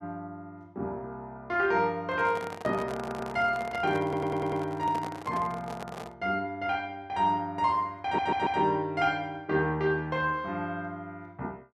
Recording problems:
microphone handling noise; from 2 to 6 s; peak -5 dB vs average level
audio stuttering; at 3 s, at 4 s and at 8 s

